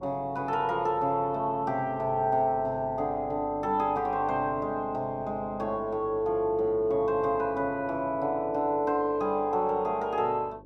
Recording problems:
hum; 50 Hz, harmonics up to 550 Hz, SNR 20 dB

